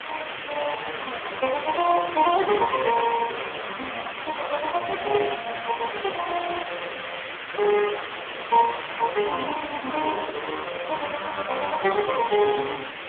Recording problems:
telephone audio; 280 Hz to 3.3 kHz, AMR-NB
background hiss; SNR 8 dB

